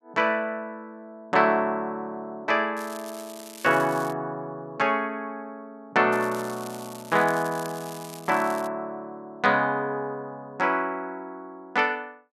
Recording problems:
crackling; from 3 to 4 s and from 6 to 8.5 s; loose cable, SNR 17 dB

